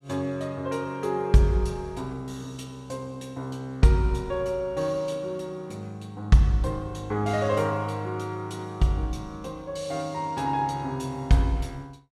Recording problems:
none

